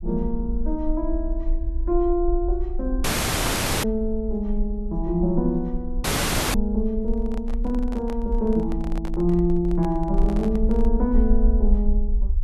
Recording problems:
rumble; below 48 Hz, SNR 3 dB
dropout; at 3 s for 1 s and at 6 s for 0.5 s
handling noise; from 7 to 11 s; peak -8 dB vs average level

